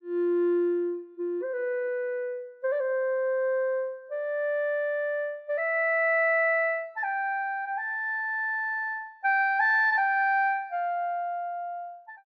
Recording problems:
none

